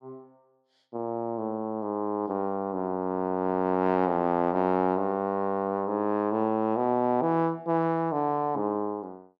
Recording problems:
none

